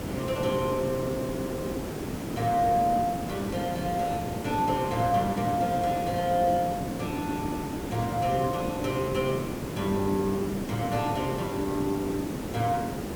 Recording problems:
background hiss; SNR 4 dB

